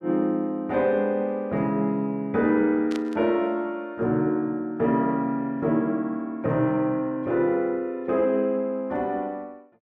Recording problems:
burst of static; at 3 s; peak -9 dB vs average level

